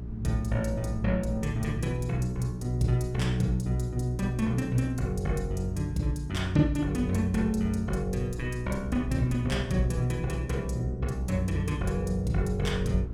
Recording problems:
electrical hum; 60 Hz, harmonics up to 420 Hz, SNR 8 dB
rumble; below 120 Hz, SNR 18 dB

